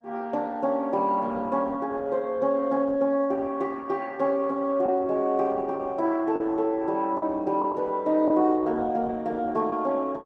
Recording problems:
codec artefacts; Opus, log-spectral distance 2 dB
lost packets; 1.8% of the sound replaced, filled with the last packet

